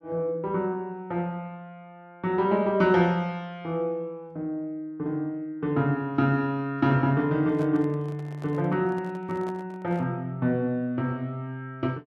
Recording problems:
handling noise; from 7.5 to 10 s; peak -11 dB vs average level

